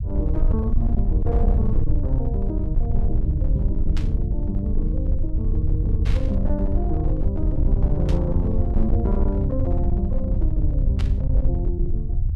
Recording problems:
distortion; hard clipping, uneven, signal-to-distortion ratio 11 dB
low-frequency rumble; below 78 Hz, SNR -5 dB
static burst; 4 times, first at 4 s; peak -4 dB vs average level

